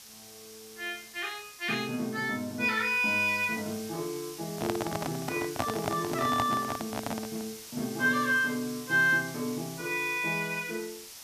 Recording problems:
background hiss; SNR 13 dB
microphone handling noise; from 4.5 to 7.5 s; peak +3 dB vs average level

